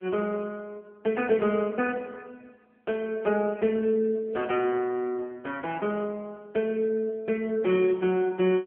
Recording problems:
phone line; 240 Hz to 3.1 kHz, AMR-NB

